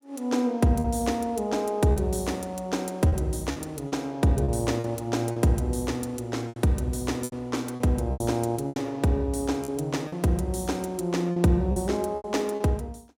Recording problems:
lost packets; 7% of the sound replaced, filled with repeated pitch periods

